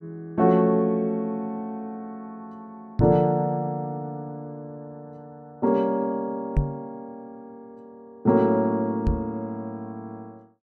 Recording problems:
microphone thump; at 3 s, at 6.5 s and at 9 s; peak +5 dB vs average level

